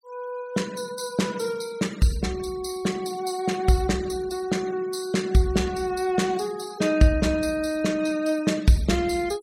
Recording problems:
noise reduction artefacts; signal-to-artefact ratio 20 dB

